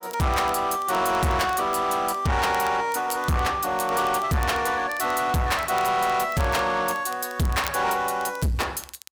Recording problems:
distorted audio; soft clipping, signal-to-distortion ratio 8 dB
crackling; vinyl, SNR 21 dB

